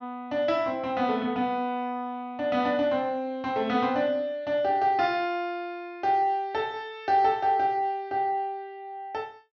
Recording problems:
treble cut off; nothing above 6.7 kHz

